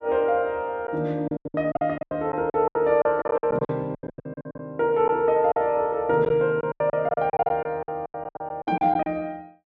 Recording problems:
packet loss; 18% of the sound replaced, filled with silence

